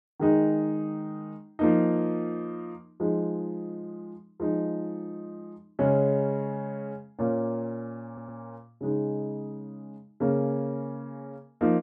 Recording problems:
audio stuttering; at 8 s

